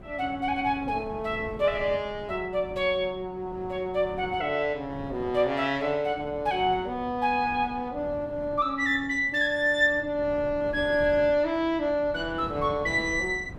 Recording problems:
wind noise; below 370 Hz, SNR 17 dB

